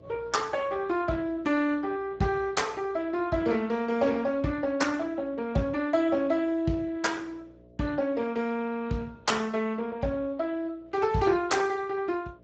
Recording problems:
lossy compression; Speex, log-spectral distance 3 dB, nothing above 7.3 kHz
hum; 60 Hz, harmonics up to 660 Hz, SNR 25 dB

